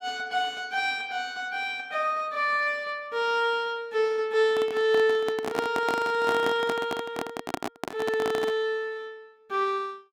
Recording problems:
handling noise; from 4.5 to 8.5 s; peak +1 dB vs average level

